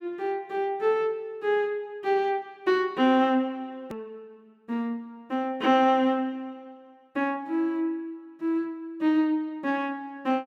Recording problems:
edit click; at 4 s

